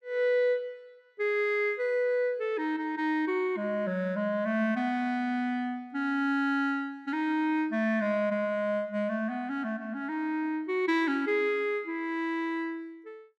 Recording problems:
none

